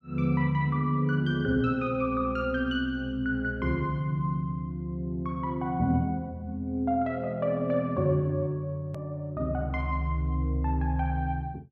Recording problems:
hard cut with a click; at 9 s

